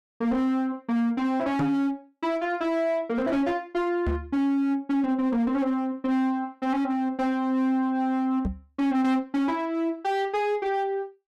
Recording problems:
distorted audio; hard clipping, signal-to-distortion ratio 11 dB
microphone bump; at 1.5 s, at 4 s and at 8.5 s; peak +3 dB vs average level

